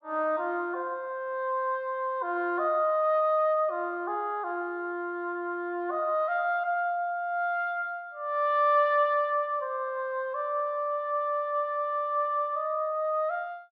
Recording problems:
none

